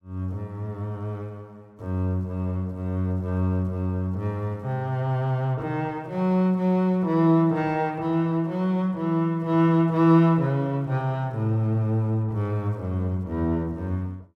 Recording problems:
none

